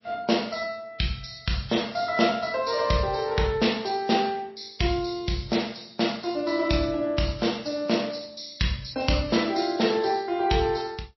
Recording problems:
lossy codec; MP3, log-spectral distance 5 dB, nothing above 5.7 kHz

